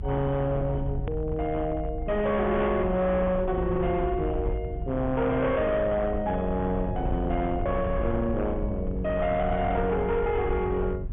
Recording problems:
treble cut off; nothing above 3.5 kHz
distorted audio; hard clipping, signal-to-distortion ratio 11 dB
low-frequency rumble; below 100 Hz, SNR 7 dB
edit click; at 1 s

